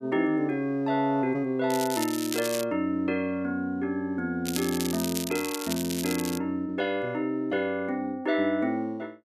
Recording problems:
crackle; at 1.5 s and from 4.5 to 6.5 s; loose cable, SNR 7 dB

